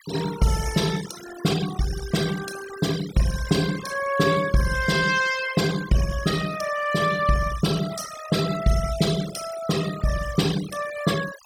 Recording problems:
denoising artefacts; signal-to-artefact ratio 12 dB

